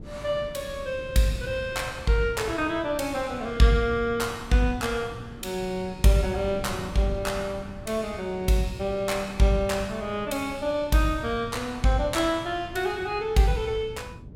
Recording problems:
wind on the microphone; below 220 Hz, SNR 16 dB

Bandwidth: 16.5 kHz